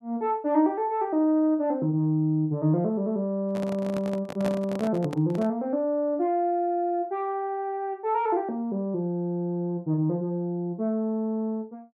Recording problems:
microphone handling noise; from 3.5 to 5.5 s; peak -2 dB vs average level

